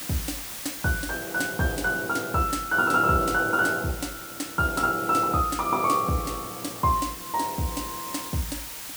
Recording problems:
hiss; slope +1 dB per octave, SNR 11 dB

